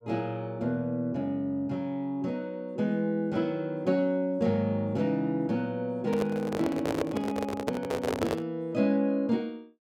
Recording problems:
microphone handling noise; from 6 to 8.5 s; peak +4 dB vs average level

